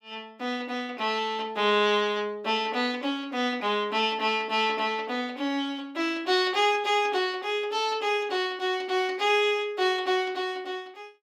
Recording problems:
none

